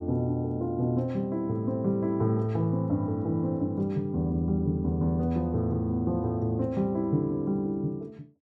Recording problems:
none

